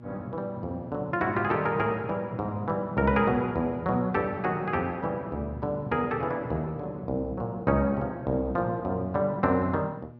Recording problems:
hum; 60 Hz, harmonics up to 1.2 kHz, SNR 17 dB

